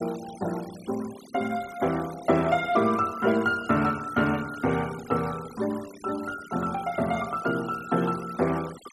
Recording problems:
denoising artefacts; signal-to-artefact ratio 18 dB

